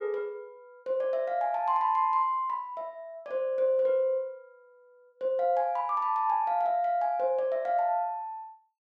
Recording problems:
none

